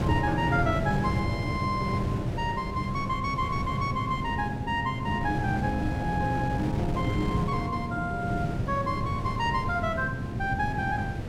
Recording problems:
wind noise; below 230 Hz, SNR 3 dB

